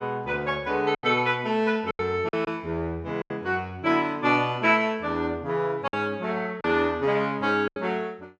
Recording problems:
packet loss; 6% of the sound replaced, filled with silence

